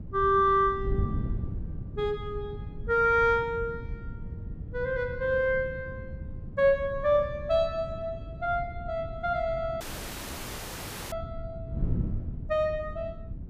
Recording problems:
wind on the microphone; below 150 Hz, SNR 10 dB
audio cutting out; at 10 s for 1.5 s

